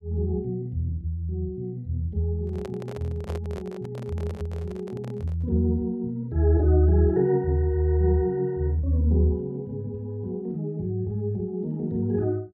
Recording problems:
microphone handling noise; from 2.5 to 5.5 s; peak -8 dB vs average level

